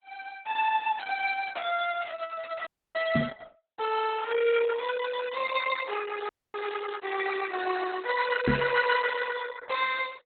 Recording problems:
lossy codec; Opus, log-spectral distance 6 dB, nothing above 4 kHz
frozen audio; at 2.5 s and at 6.5 s
knock on the microphone; at 3 s and at 8.5 s; peak +7 dB vs average level

